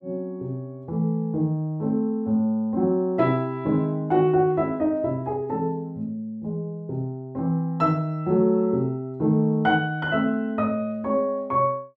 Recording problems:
none

